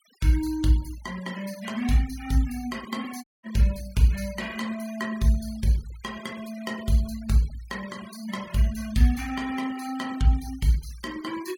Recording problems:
denoising artefacts; signal-to-artefact ratio 19 dB
audio cutting out; at 3 s

